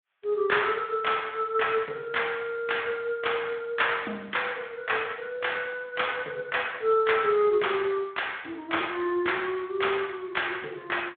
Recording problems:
telephone audio; 260 Hz to 3.6 kHz, Speex

